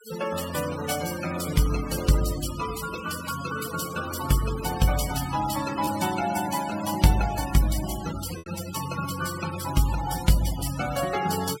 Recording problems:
denoising artefacts; signal-to-artefact ratio 10 dB
lost packets; 0.9% of the sound replaced, filled with repeated pitch periods

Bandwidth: 16.5 kHz